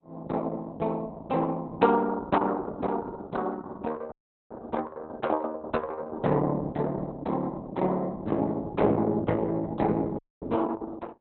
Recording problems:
codec artefacts; Opus, log-spectral distance 4 dB, nothing above 4 kHz
dropout; at 4 s and at 10 s

